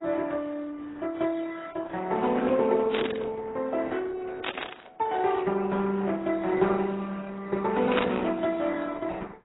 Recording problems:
lossy compression; Opus, then AAC, log-spectral distance 4 dB, nothing above 3.8 kHz
burst of static; at 3 s, at 4.5 s and at 8 s; peak +5 dB vs average level

